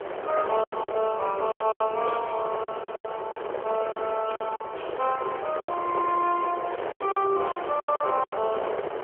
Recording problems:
phone line; 370 Hz to 3.2 kHz, AMR-NB
wind on the microphone; below 920 Hz, SNR 6 dB
lost packets; 12% of the sound replaced, filled with silence

